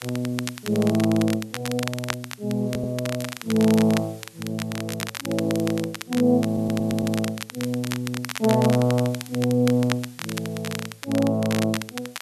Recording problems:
hiss; slope +2 dB per octave, SNR 25 dB
crackle; vinyl, SNR 10 dB
audio stuttering; at 2.5 s and at 6.5 s

